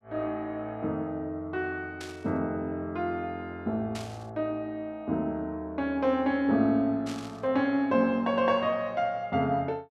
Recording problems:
static burst; at 2 s, at 4 s and at 7 s; peak -8 dB vs average level

